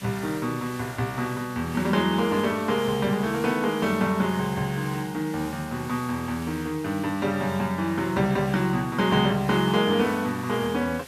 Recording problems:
hiss; slope 0 dB per octave, SNR 18 dB

